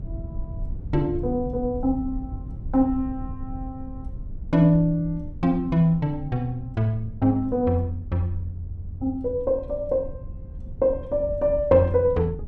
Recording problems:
low-frequency rumble; below 98 Hz, SNR 13 dB

